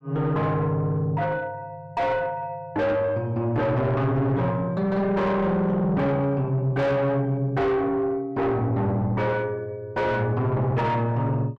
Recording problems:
distorted audio; soft clipping, signal-to-distortion ratio 7 dB

